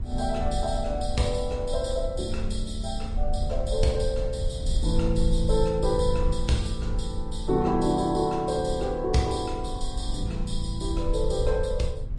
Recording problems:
lossy compression; Vorbis, log-spectral distance 2 dB
rumble; below 62 Hz, SNR 4 dB

